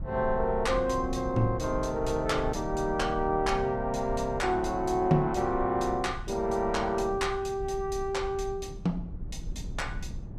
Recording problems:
rumble; below 110 Hz, SNR 11 dB

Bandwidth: 15.5 kHz